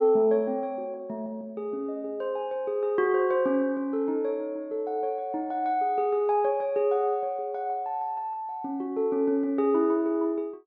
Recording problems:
treble missing; nothing above 7.2 kHz

